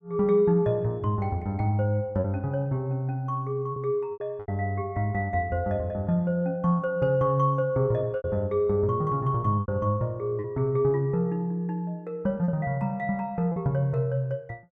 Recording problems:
lost packets; 4% of the sound replaced, filled with repeated pitch periods

